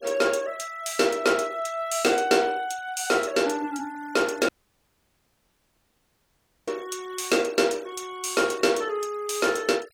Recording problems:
noise reduction artefacts; signal-to-artefact ratio 22 dB
dropout; at 4.5 s for 2 s

